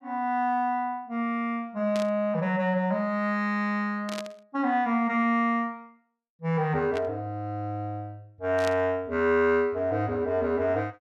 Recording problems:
static burst; 4 times, first at 2 s; peak -6 dB vs average level

